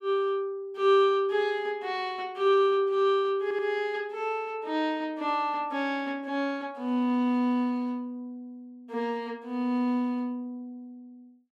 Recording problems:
stutter; at 3.5 s

